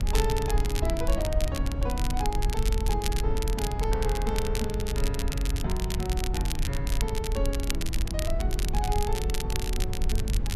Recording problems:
rumble; below 72 Hz, SNR -3 dB
crackle; vinyl, SNR 4 dB

